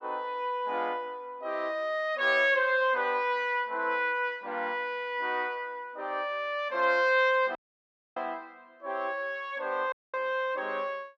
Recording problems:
audio cutting out; at 7.5 s for 0.5 s and at 10 s

